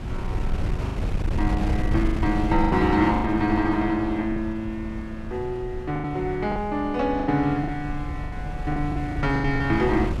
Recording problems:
wind noise; below 130 Hz, SNR 6 dB
packet loss; 9% of the sound replaced, filled with the last packet

